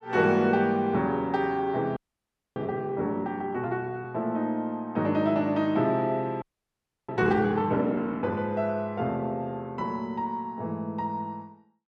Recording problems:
audio freezing; at 2 s for 0.5 s and at 6.5 s for 0.5 s

